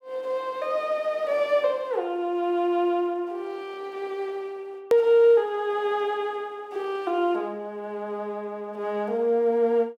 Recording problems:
click at an edit; at 5 s

